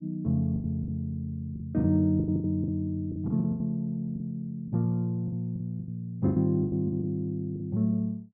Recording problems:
packet loss; 14% of the sound replaced, filled with the last packet

